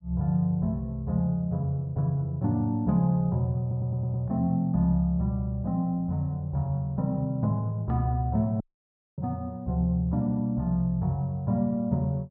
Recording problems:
audio stuttering; at 3.5 s
dropout; at 8.5 s for 0.5 s

